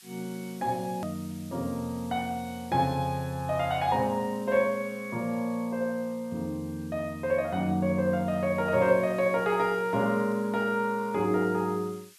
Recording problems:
hiss; SNR 24 dB
edit click; at 1 s

